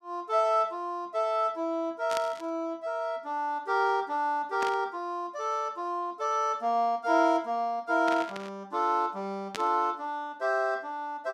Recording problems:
static burst; 4 times, first at 2 s; peak -2 dB vs average level

